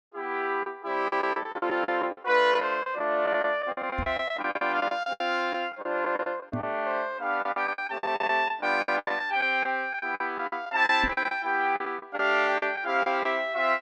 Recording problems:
packet loss; 15% of the sound replaced, filled with the last packet
knock on the microphone; at 4 s, at 6.5 s and at 11 s; peak -1 dB vs average level

